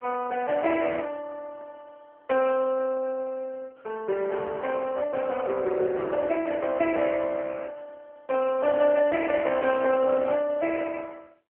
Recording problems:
phone line; 340 Hz to 2.3 kHz, AMR-NB

